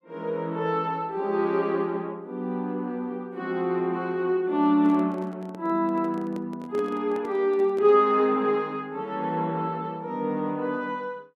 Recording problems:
microphone handling noise; from 4.5 to 8 s; peak -9 dB vs average level

